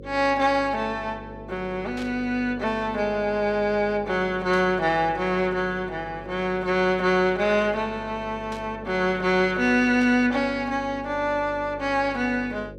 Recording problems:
hum; 50 Hz, harmonics up to 550 Hz, SNR 17 dB
burst of static; 4 times, first at 2 s; peak -11 dB vs average level

